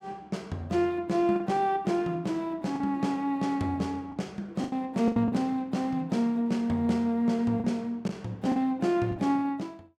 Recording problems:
packet loss; 5% of the sound replaced, filled with the last packet

